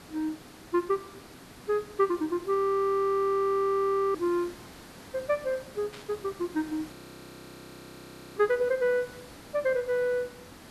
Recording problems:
hiss; slope -4 dB per octave, SNR 18 dB
frozen audio; at 2.5 s for 1.5 s and at 7 s for 1.5 s
static burst; at 6 s; peak -13 dB vs average level

